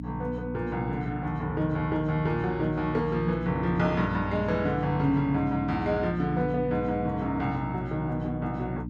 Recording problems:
hum; 60 Hz, harmonics up to 300 Hz, SNR 8 dB

